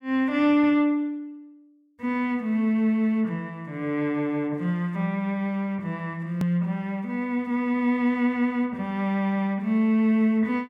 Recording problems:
hard cut with a click; at 6.5 s

